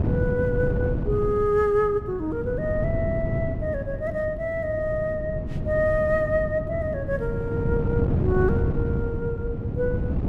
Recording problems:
wind on the microphone; below 210 Hz, SNR 2 dB

